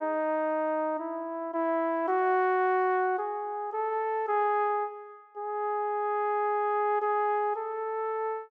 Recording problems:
none

